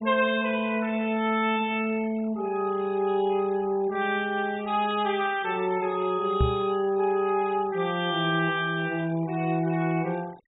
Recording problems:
low-pass filter; nothing above 4 kHz
denoising artefacts; signal-to-artefact ratio 22 dB
knock on the microphone; at 6.5 s; peak +5 dB vs average level

